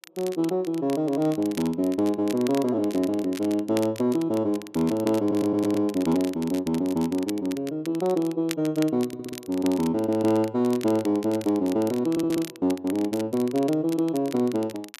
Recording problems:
crackle; vinyl, SNR 17 dB
stutter; at 5 s, at 9 s and at 12 s

